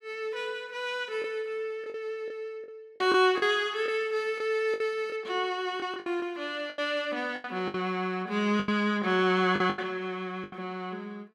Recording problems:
lost packets; 9% of the sound replaced, filled with the last packet

